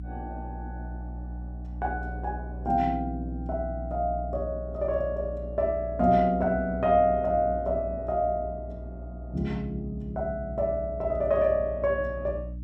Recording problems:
hum; 60 Hz, harmonics up to 300 Hz, SNR 10 dB

